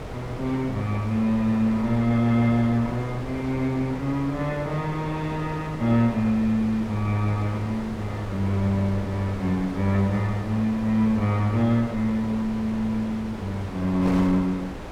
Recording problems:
wind noise; below 810 Hz, SNR 12 dB

